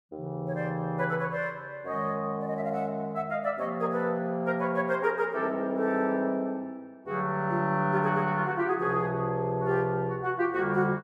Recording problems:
none

